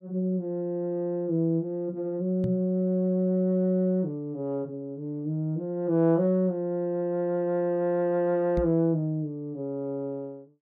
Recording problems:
microphone thump; at 2.5 s and at 8.5 s; peak +2 dB vs average level

